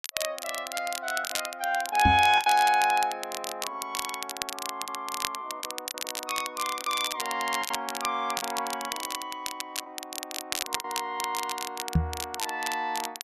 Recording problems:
crackle; vinyl, SNR 6 dB
packet loss; 5% of the sound replaced, filled with the last packet
microphone bump; at 2 s and at 12 s; peak +9 dB vs average level

